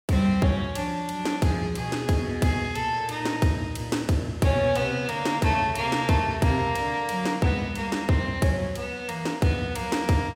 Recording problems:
none

